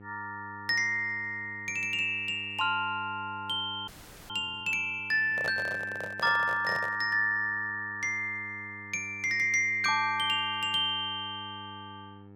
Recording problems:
electrical hum; 50 Hz, harmonics up to 1.4 kHz, SNR 21 dB
audio freezing; at 4 s
handling noise; from 5.5 to 7 s; peak -5 dB vs average level

